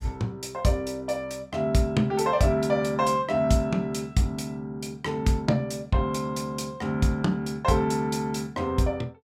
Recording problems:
none

